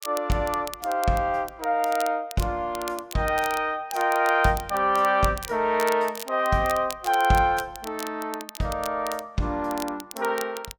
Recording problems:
crackle; vinyl, SNR 15 dB

